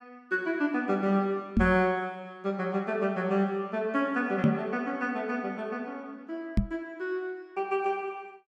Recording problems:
microphone thump; at 1.5 s, at 4.5 s and at 6.5 s; peak +9 dB vs average level

